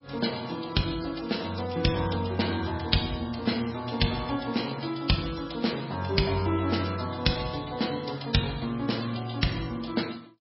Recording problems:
lossy compression; MP3, log-spectral distance 9 dB, nothing above 5.5 kHz

